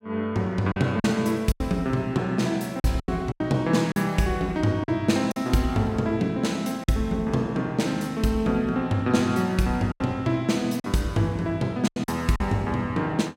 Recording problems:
lost packets; 6% of the sound replaced, filled with silence

